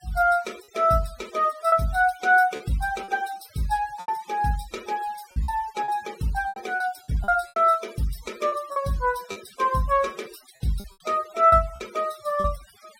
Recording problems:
denoising artefacts; signal-to-artefact ratio 22 dB
lost packets; 7% of the sound replaced, filled with repeated pitch periods

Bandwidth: 16 kHz